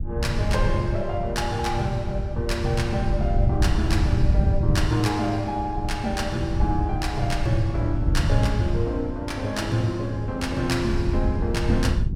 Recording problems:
wind on the microphone; below 120 Hz, SNR 0 dB

